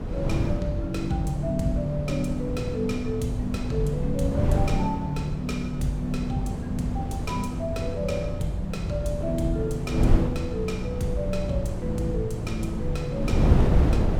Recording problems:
electrical hum; 60 Hz, harmonics up to 720 Hz, SNR 27 dB
wind on the microphone; below 190 Hz, SNR 0 dB

